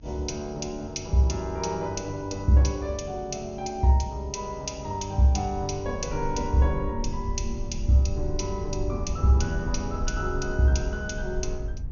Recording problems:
treble missing; nothing above 6.7 kHz
hum; 50 Hz, harmonics up to 300 Hz, SNR 19 dB
rumble; below 68 Hz, SNR 8 dB

